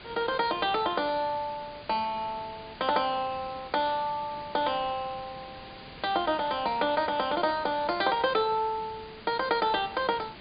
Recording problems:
treble missing; nothing above 4.9 kHz
hiss; SNR 16 dB

